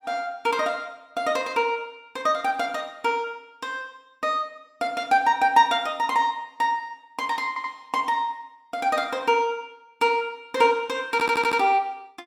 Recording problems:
stutter; at 7.5 s and at 11 s

